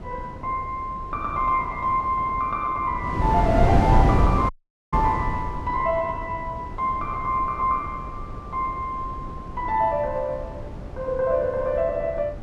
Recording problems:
wind noise; below 250 Hz, SNR 4 dB
dropout; at 4.5 s

